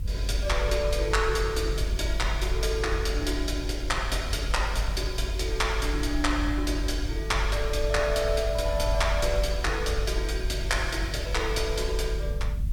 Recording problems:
background hiss; slope -1 dB per octave, SNR 24 dB
rumble; below 56 Hz, strongest tone 48 Hz, SNR 2 dB

